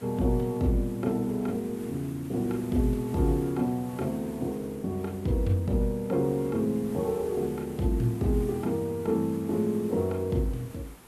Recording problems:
hiss; slope -5 dB per octave, SNR 20 dB

